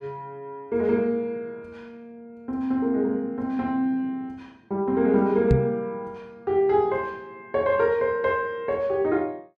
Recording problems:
microphone thump; at 5.5 s; peak +8 dB vs average level

